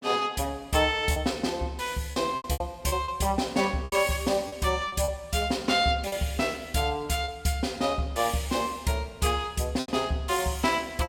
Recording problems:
packet loss; 6% of the sound replaced, filled with repeated pitch periods

